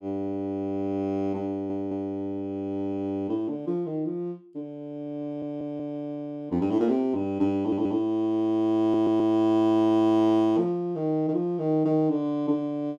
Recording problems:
audio stuttering; 4 times, first at 1.5 s

